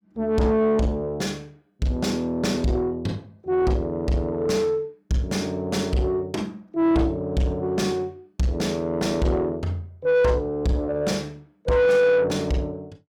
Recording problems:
distorted audio; soft clipping, signal-to-distortion ratio 7 dB

